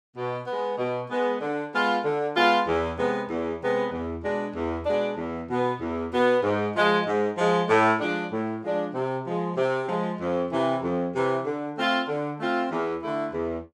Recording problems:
none

